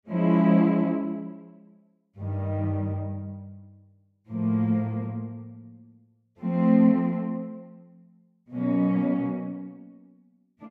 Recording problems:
none

